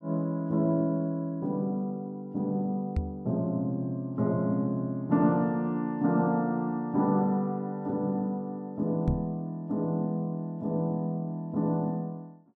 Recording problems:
microphone bump; at 3 s and at 9 s; peak +5 dB vs average level

